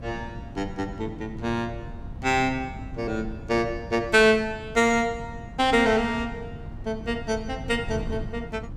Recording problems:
wind on the microphone; below 170 Hz, SNR 13 dB

